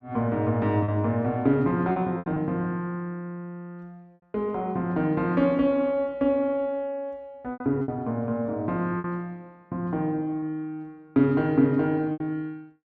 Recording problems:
packet loss; 4% of the sound replaced, filled with repeated pitch periods

